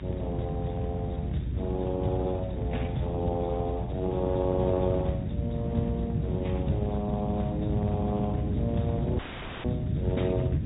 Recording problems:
treble missing; nothing above 3.8 kHz
codec artefacts; Speex, log-spectral distance 2 dB
hiss; SNR 26 dB
rumble; below 190 Hz, SNR 0 dB
dropout; at 9 s

